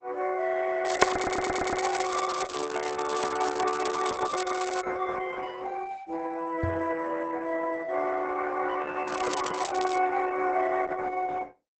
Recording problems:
lossy codec; Opus, log-spectral distance 8 dB, nothing above 8 kHz
crackle; from 1 to 5 s and at 9 s; loose cable, SNR 11 dB
stutter; at 1 s
microphone thump; at 6.5 s; peak +1 dB vs average level

